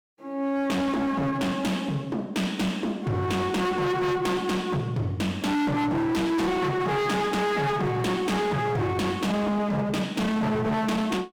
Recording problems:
distorted audio; hard clipping, signal-to-distortion ratio 7 dB

